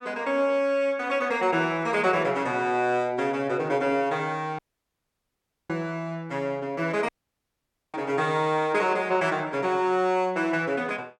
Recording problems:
audio cutting out; at 4.5 s for 1 s and at 7 s for 1 s

